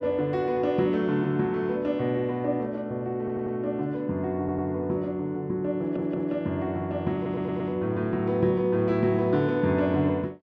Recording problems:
audio stuttering; 4 times, first at 3 s

